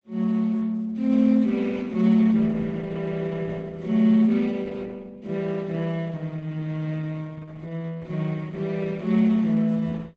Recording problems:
lossy codec; Opus, log-spectral distance 3 dB, nothing above 7.6 kHz

